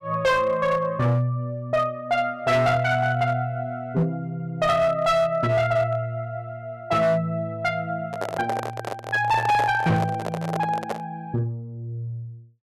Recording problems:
distorted audio; hard clipping, signal-to-distortion ratio 12 dB
microphone handling noise; from 8 to 11 s; peak -1 dB vs average level

